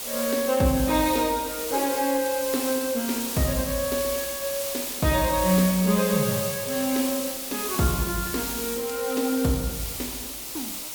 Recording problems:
background hiss; SNR 4 dB

